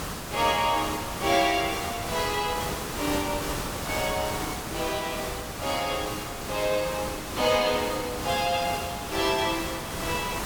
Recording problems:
background hiss; slope -4 dB per octave, SNR 5 dB

